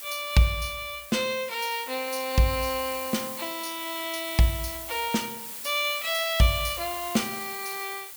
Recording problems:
hiss; slope +1 dB per octave, SNR 8 dB

